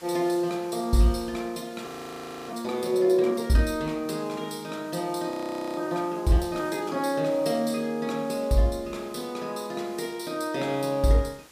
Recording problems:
background hiss; slope -2 dB per octave, SNR 22 dB
frozen audio; at 2 s for 0.5 s and at 5.5 s

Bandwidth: 15 kHz